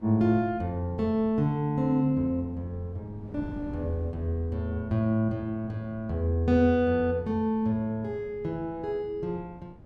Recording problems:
wind on the microphone; below 250 Hz, SNR 19 dB

